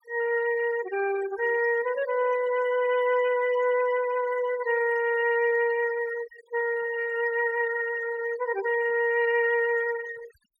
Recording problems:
noise reduction artefacts; signal-to-artefact ratio 17 dB

